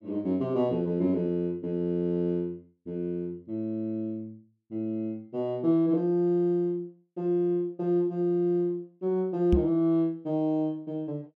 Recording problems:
knock on the microphone; at 9.5 s; peak +6 dB vs average level

